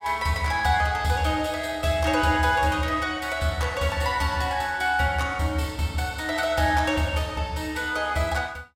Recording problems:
none

